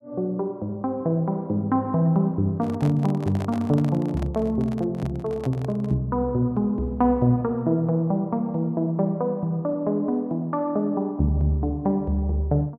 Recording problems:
microphone handling noise; from 2.5 to 6 s; peak -8 dB vs average level

